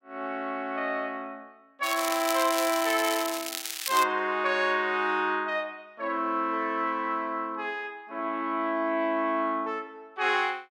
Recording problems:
crackle; from 2 to 4 s; loose cable, SNR 5 dB

